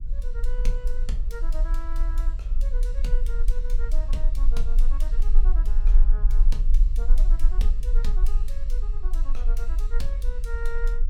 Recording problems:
rumble; below 36 Hz, strongest tone 20 Hz, SNR -14 dB

